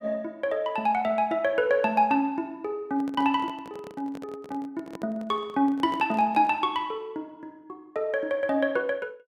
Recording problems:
handling noise; from 3 to 6.5 s; peak -9 dB vs average level

